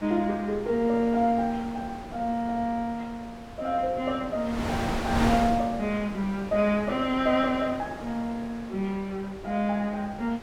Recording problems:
wind on the microphone; below 1.2 kHz, SNR 10 dB

